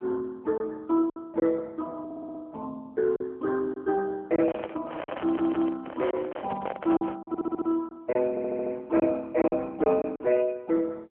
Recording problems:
telephone audio; 280 Hz to 2.5 kHz, AMR-NB
packet loss; 6% of the sound replaced, filled with silence
stutter; 4 times, first at 2 s
microphone handling noise; from 4.5 to 7 s; peak -2 dB vs average level

